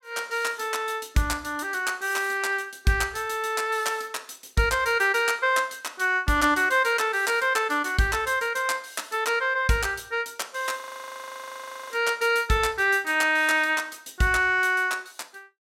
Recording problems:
audio freezing; at 11 s for 1 s

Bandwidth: 16.5 kHz